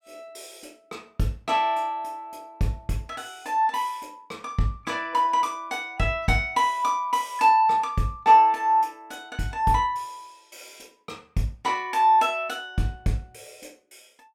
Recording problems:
none

